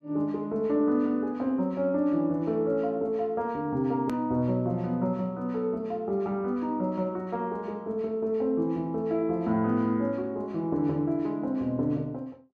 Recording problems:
hard cut with a click; at 4 s

